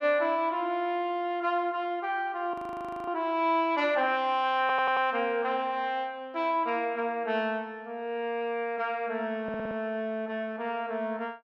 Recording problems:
audio freezing; at 2.5 s for 0.5 s
stutter; at 4.5 s and at 9.5 s

